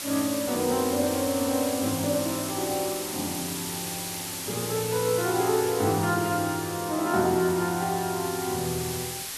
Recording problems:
hiss; slope +1 dB per octave, SNR 6 dB

